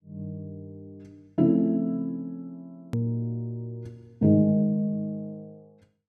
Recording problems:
hard cut with a click; at 3 s

